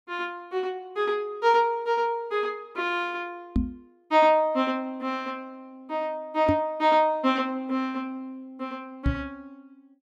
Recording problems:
microphone bump; at 3.5 s, at 6.5 s and at 9 s; peak +5 dB vs average level

